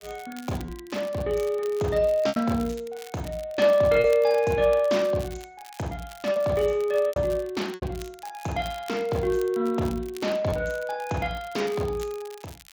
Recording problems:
codec artefacts; Speex, log-spectral distance 2 dB
crackling; vinyl, SNR 22 dB
lost packets; 3% of the sound replaced, filled with repeated pitch periods

